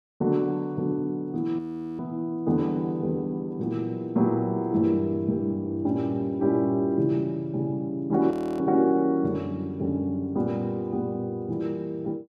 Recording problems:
audio freezing; at 1.5 s and at 8.5 s

